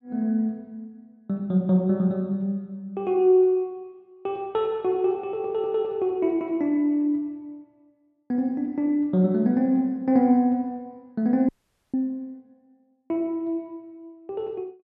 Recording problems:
audio cutting out; at 11 s

